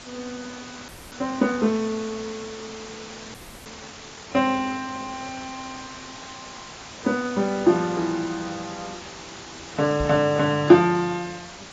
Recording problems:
codec artefacts; AAC, log-spectral distance 15 dB
hiss; slope -2 dB per octave, SNR 15 dB
frozen audio; at 1 s and at 3.5 s
knock on the microphone; at 10 s; peak -4 dB vs average level

